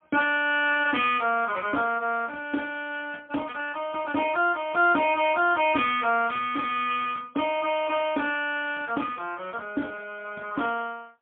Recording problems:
telephone audio; 240 Hz to 3.4 kHz, AMR-NB, then MP3

